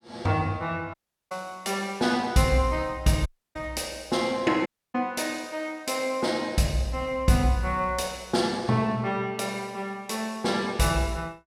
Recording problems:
dropout; at 1 s, at 3.5 s and at 4.5 s

